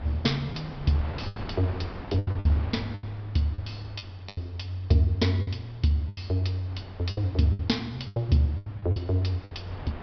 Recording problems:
treble cut off; nothing above 5.5 kHz
wind on the microphone; below 750 Hz, SNR 15 dB
packet loss; 10% of the sound replaced, filled with the last packet

